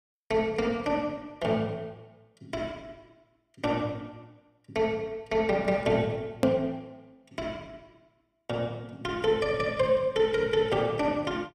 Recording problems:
edit click; at 6.5 s

